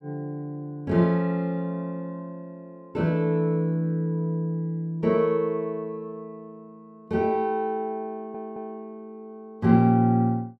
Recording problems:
audio stuttering; at 8 s

